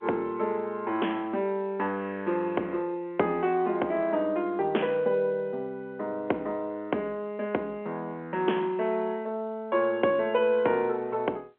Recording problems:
telephone audio; 240 Hz to 3.2 kHz, G.711

